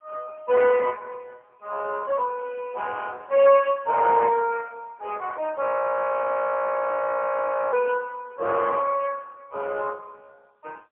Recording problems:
phone line; 340 Hz to 3.1 kHz, AMR-NB, then MP3
audio freezing; at 5.5 s for 2 s

